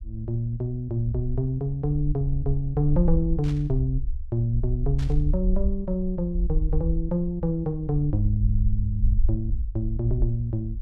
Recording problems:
low-frequency rumble; below 54 Hz, SNR 3 dB
static burst; at 3.5 s and at 5 s; peak -12 dB vs average level

